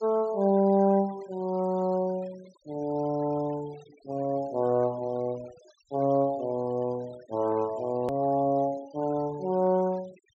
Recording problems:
treble missing; nothing above 8 kHz
denoising artefacts; signal-to-artefact ratio 25 dB
edit click; at 8 s

